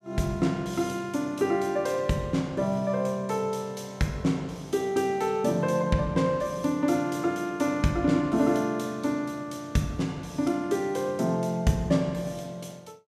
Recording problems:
none

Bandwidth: 14.5 kHz